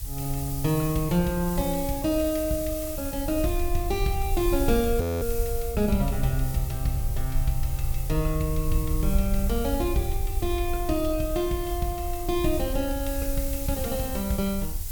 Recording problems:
hiss; SNR 9 dB
low-frequency rumble; below 64 Hz, SNR 5 dB
audio freezing; at 5 s

